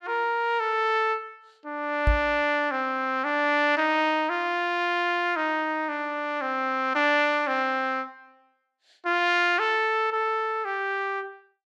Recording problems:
microphone thump; at 2 s; peak +4 dB vs average level

